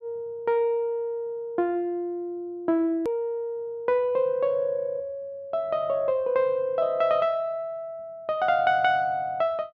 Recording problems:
hard cut with a click; at 3 s

